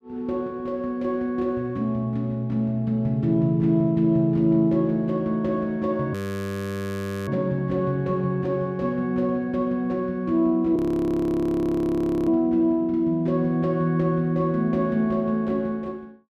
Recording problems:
frozen audio; at 6 s for 1 s and at 11 s for 1.5 s

